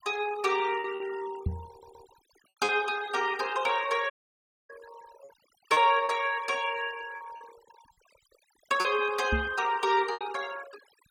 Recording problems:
denoising artefacts; signal-to-artefact ratio 18 dB
packet loss; 6% of the sound replaced, filled with repeated pitch periods
knock on the microphone; at 1.5 s and at 9.5 s; peak +2 dB vs average level
audio stuttering; at 1.5 s
dropout; at 4 s for 0.5 s

